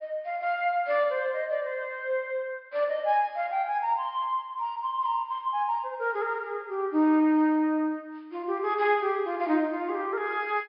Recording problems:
low-pass filter; nothing above 5.5 kHz

